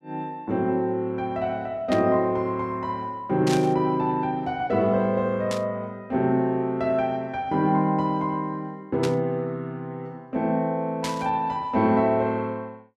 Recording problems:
burst of static; 5 times, first at 2 s; peak -3 dB vs average level

